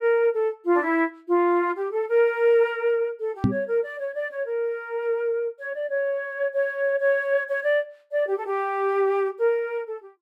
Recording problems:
microphone bump; at 3.5 s; peak +6 dB vs average level

